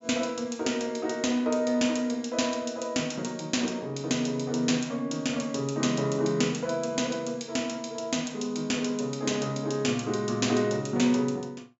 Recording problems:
treble cut off; nothing above 8 kHz

